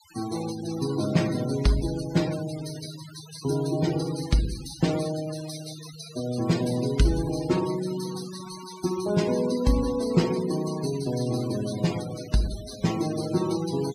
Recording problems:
noise reduction artefacts; signal-to-artefact ratio 14 dB

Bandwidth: 15.5 kHz